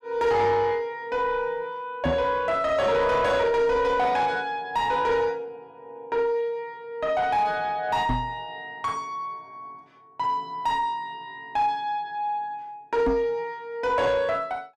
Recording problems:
distortion; soft clipping, signal-to-distortion ratio 10 dB
microphone thump; at 2 s, at 8 s and at 13 s; peak +4 dB vs average level

